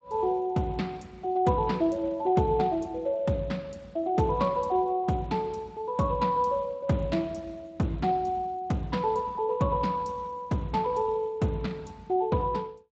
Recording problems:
lossy codec; Speex, log-spectral distance 2 dB, nothing above 7.3 kHz

